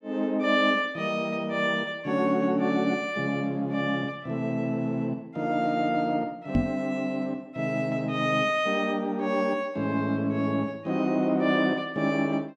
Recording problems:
microphone bump; at 6.5 s; peak +6 dB vs average level

